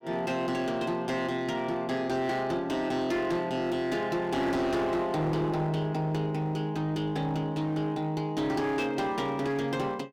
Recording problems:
distortion; hard clipping, uneven, signal-to-distortion ratio 11 dB

